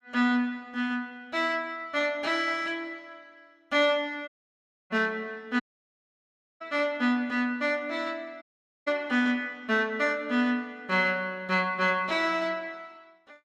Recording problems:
audio cutting out; at 4.5 s for 0.5 s, at 5.5 s for 1 s and at 8.5 s

